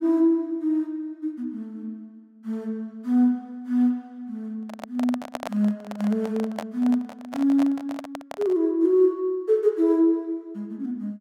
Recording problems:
microphone handling noise; from 4.5 to 8.5 s; peak -3 dB vs average level

